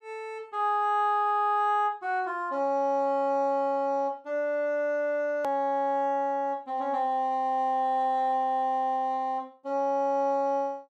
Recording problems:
hard cut with a click; at 5.5 s

